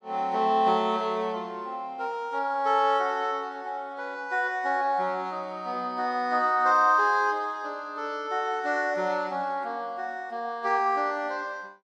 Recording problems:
none

